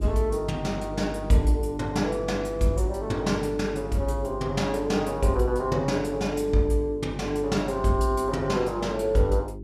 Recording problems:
hum; 50 Hz, harmonics up to 400 Hz, SNR 12 dB

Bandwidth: 14.5 kHz